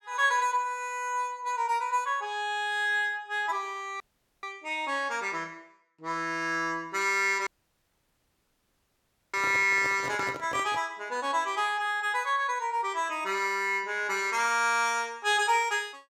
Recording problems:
audio cutting out; at 4 s and at 7.5 s for 2 s
handling noise; from 9.5 to 11 s; peak -8 dB vs average level

